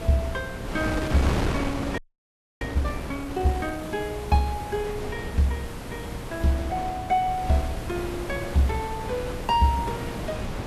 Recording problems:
lossy compression; Vorbis, log-spectral distance 4 dB
hum; 60 Hz, harmonics up to 420 Hz, SNR 17 dB
background hiss; slope -3 dB per octave, SNR 19 dB
wind noise; below 710 Hz, SNR 6 dB
audio freezing; at 2 s for 0.5 s

